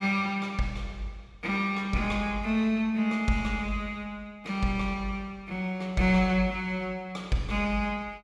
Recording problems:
none

